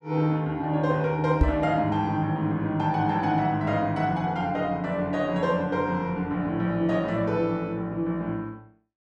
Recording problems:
microphone bump; at 1.5 s; peak +8 dB vs average level

